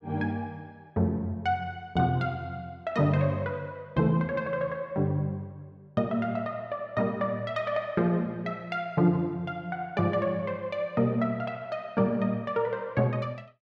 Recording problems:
none

